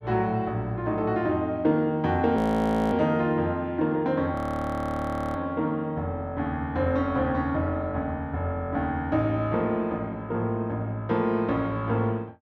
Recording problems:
frozen audio; at 2.5 s for 0.5 s and at 4.5 s for 1 s

